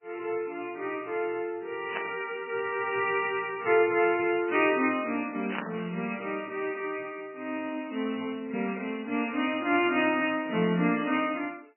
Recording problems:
lossy codec; MP3, log-spectral distance 5 dB, nothing above 2.6 kHz
burst of static; at 2 s and at 5.5 s; peak +2 dB vs average level

